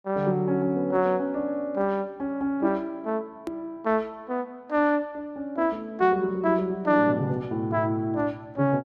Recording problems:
edit click; at 3.5 s

